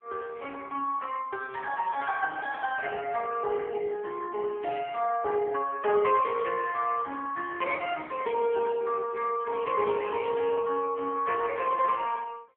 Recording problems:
phone line; 300 Hz to 3.3 kHz, AMR-NB

